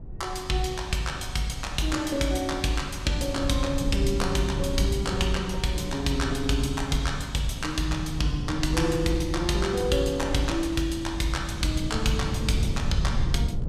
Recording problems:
rumble; below 140 Hz, SNR 6 dB

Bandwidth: 15.5 kHz